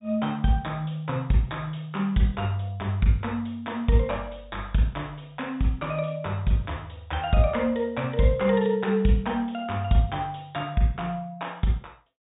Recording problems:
low-pass filter; nothing above 4 kHz

